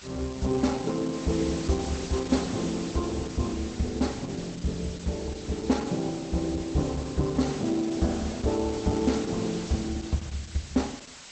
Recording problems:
lossy codec; Opus, log-spectral distance 10 dB, nothing above 8 kHz
hiss; slope 0 dB per octave, SNR 13 dB

